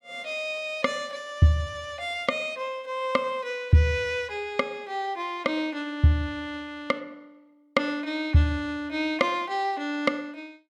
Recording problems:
none

